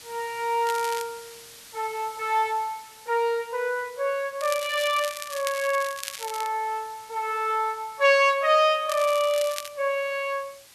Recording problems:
background hiss; slope +1 dB per octave, SNR 21 dB
crackle; at 0.5 s, from 4.5 to 6.5 s and at 9 s; loose cable, SNR 11 dB

